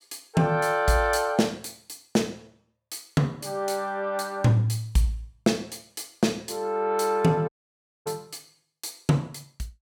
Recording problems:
dropout; at 7.5 s for 0.5 s

